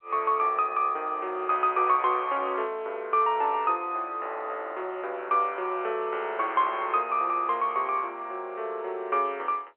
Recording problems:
phone line; 320 Hz to 3.3 kHz, G.711

